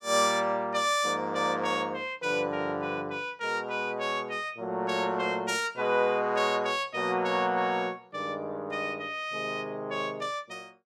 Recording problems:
none

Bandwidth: 16.5 kHz